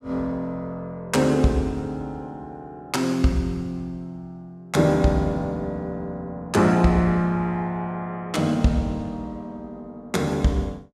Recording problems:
none

